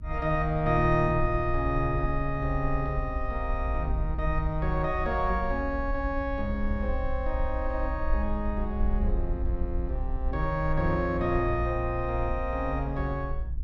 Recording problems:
low-frequency rumble; below 58 Hz, SNR 4 dB

